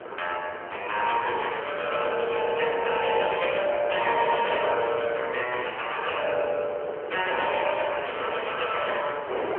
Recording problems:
phone line; 340 Hz to 3.2 kHz, AMR-NB
wind noise; below 1.1 kHz, SNR 11 dB

